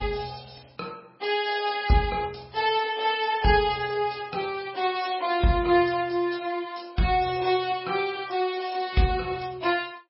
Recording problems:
codec artefacts; MP3, log-spectral distance 5 dB, nothing above 5 kHz

